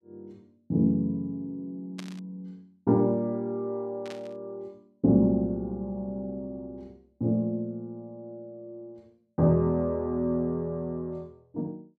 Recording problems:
burst of static; at 2 s and at 4 s; peak -9 dB vs average level

